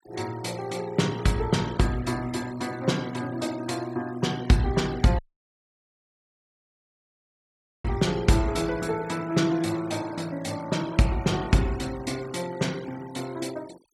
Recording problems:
noise reduction artefacts; signal-to-artefact ratio 19 dB
audio cutting out; at 5 s for 2.5 s

